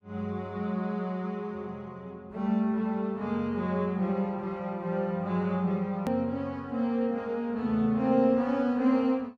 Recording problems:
click at an edit; at 6 s

